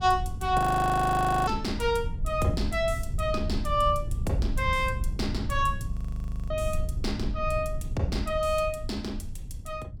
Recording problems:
rumble; below 88 Hz, SNR 6 dB
audio freezing; at 0.5 s for 1 s and at 6 s for 0.5 s

